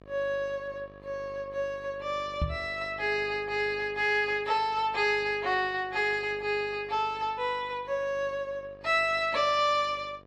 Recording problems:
lossy codec; AAC, log-spectral distance 2 dB, nothing above 12.3 kHz
hum; 50 Hz, harmonics up to 2.5 kHz, SNR 24 dB
knock on the microphone; at 2.5 s; peak +2 dB vs average level

